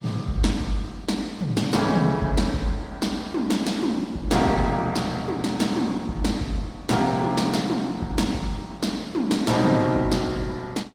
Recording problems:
lossy codec; Opus, log-spectral distance 3 dB, nothing above 19 kHz

